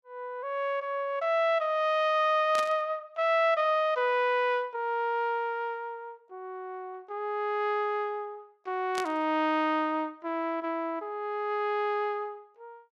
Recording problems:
static burst; at 2.5 s and at 9 s; peak -4 dB vs average level

